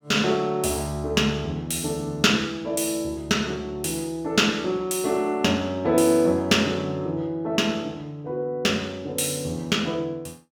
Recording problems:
none

